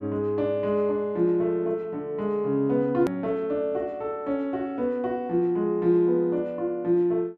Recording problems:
click at an edit; at 3 s

